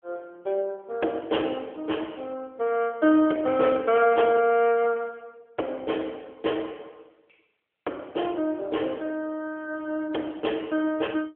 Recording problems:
phone line; 280 Hz to 3.3 kHz, AMR-NB

